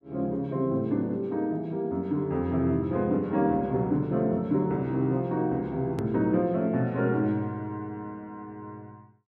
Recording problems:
edit click; at 6 s

